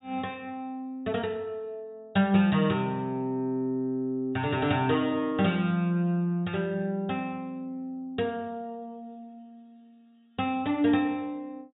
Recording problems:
treble cut off; nothing above 4 kHz

